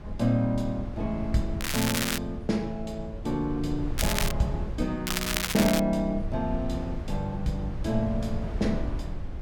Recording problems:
mains hum; 50 Hz, harmonics up to 600 Hz, SNR 26 dB
low-frequency rumble; below 100 Hz, SNR 7 dB
crackling; at 1.5 s, at 4 s and at 5 s; loose cable, SNR 1 dB

